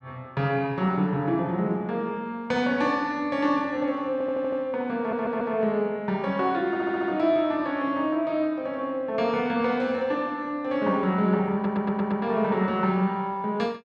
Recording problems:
stutter; 4 times, first at 4 s

